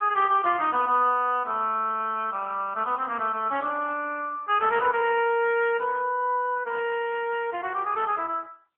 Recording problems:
phone line; 260 Hz to 3.1 kHz, AMR-NB

